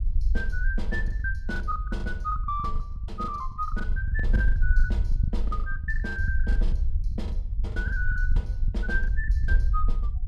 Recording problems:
low-frequency rumble; below 56 Hz, SNR -5 dB
packet loss; 20% of the sound replaced, filled with the last packet

